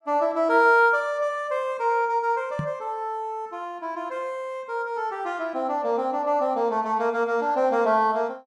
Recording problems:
microphone bump; at 2.5 s; peak -1 dB vs average level

